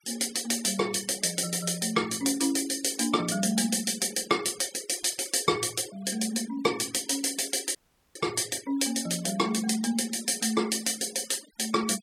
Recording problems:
denoising artefacts; signal-to-artefact ratio 18 dB
dropout; at 8 s

